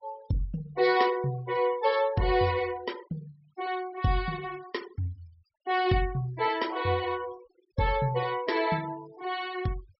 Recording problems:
treble missing; nothing above 5.6 kHz
denoising artefacts; signal-to-artefact ratio 22 dB

